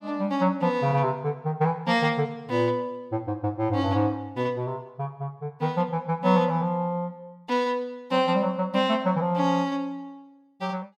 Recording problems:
none

